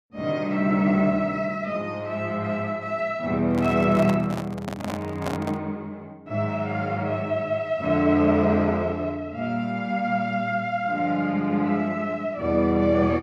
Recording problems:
microphone handling noise; from 3.5 to 5.5 s; peak -2 dB vs average level

